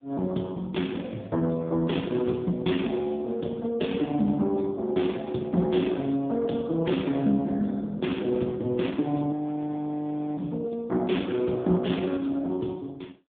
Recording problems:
telephone audio; 110 Hz to 3.6 kHz, AMR-NB
audio freezing; at 9.5 s for 1 s

